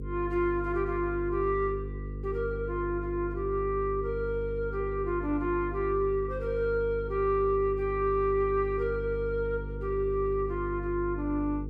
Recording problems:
mains hum; 50 Hz, harmonics up to 500 Hz, SNR 8 dB

